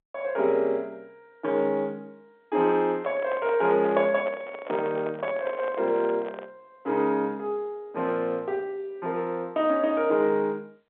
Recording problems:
phone line; 240 Hz to 4 kHz, G.711
microphone handling noise; from 3 to 6.5 s; peak -3 dB vs average level

